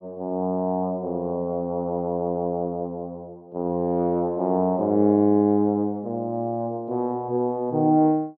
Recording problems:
none

